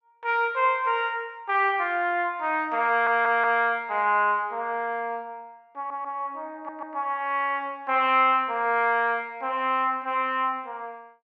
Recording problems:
audio stuttering; at 3 s, at 6 s and at 6.5 s

